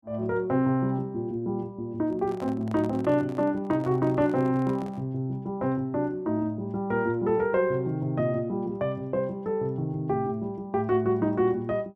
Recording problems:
handling noise; from 2 to 5 s; peak -11 dB vs average level

